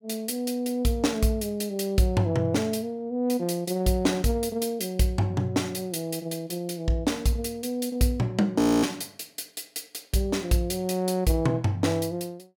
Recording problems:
frozen audio; at 8.5 s

